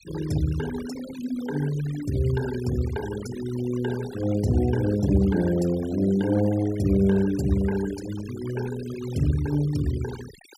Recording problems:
denoising artefacts; signal-to-artefact ratio 17 dB

